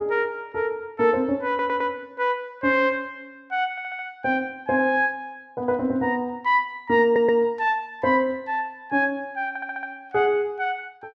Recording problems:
audio stuttering; 4 times, first at 1.5 s

